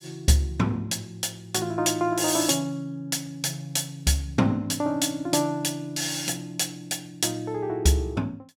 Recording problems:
none

